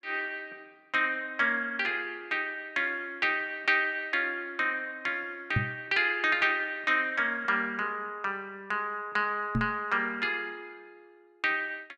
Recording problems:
knock on the microphone; at 5.5 s and at 9.5 s; peak +4 dB vs average level

